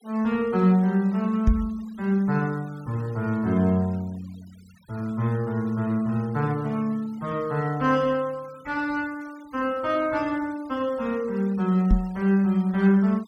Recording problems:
denoising artefacts; signal-to-artefact ratio 26 dB
microphone bump; at 1.5 s and at 12 s; peak +7 dB vs average level

